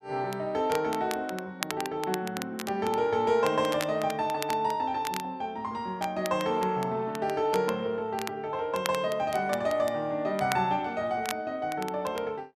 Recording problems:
crackling; vinyl, SNR 12 dB

